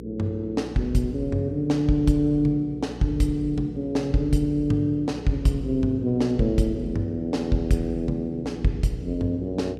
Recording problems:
hum; 60 Hz, harmonics up to 480 Hz, SNR 13 dB

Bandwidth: 15 kHz